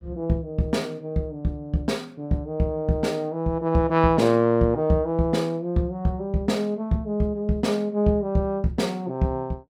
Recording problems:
none

